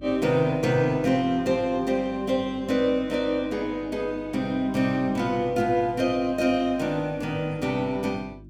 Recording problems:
hum; 50 Hz, harmonics up to 350 Hz, SNR 21 dB

